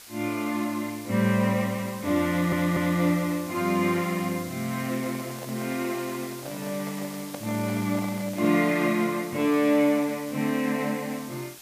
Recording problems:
hiss; slope +1 dB per octave, SNR 15 dB
audio stuttering; at 2.5 s
handling noise; from 5 to 9 s; peak -8 dB vs average level

